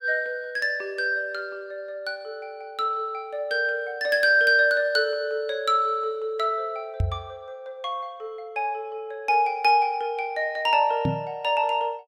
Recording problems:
microphone thump; at 7 s and at 11 s; peak +3 dB vs average level

